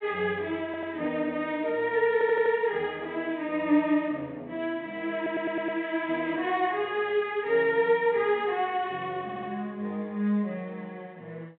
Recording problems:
telephone audio; 240 Hz to 3.7 kHz, G.726
audio stuttering; 4 times, first at 0.5 s

